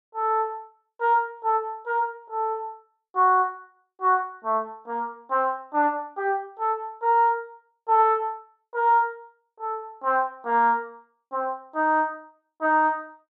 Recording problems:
none

